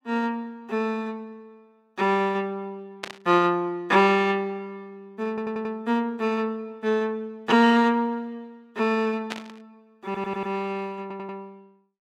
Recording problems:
static burst; at 3 s and at 9.5 s; peak -3 dB vs average level
stutter; at 5.5 s, at 10 s and at 11 s

